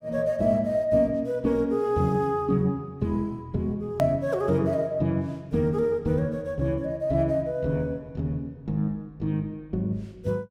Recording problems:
edit click; at 4 s

